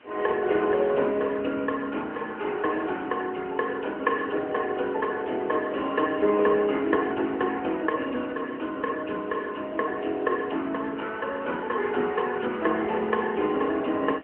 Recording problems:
telephone audio; 220 Hz to 3.1 kHz, AMR-NB
hiss; SNR 27 dB

